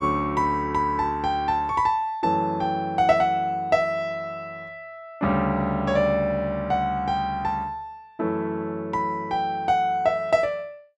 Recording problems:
none

